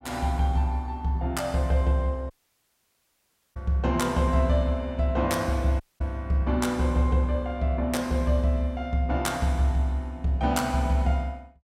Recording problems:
audio cutting out; at 2.5 s for 1.5 s and at 6 s

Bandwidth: 16 kHz